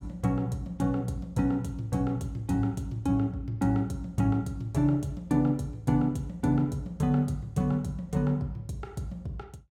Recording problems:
none

